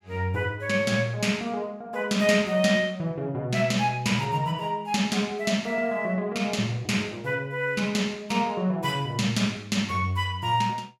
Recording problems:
none

